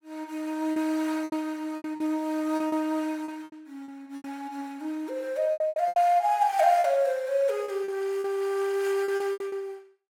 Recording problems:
packet loss; 12% of the sound replaced, filled with repeated pitch periods

